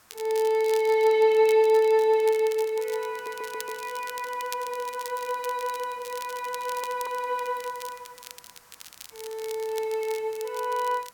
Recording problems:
background hiss; SNR 28 dB
crackle; vinyl, SNR 17 dB
audio stuttering; at 3 s and at 6.5 s

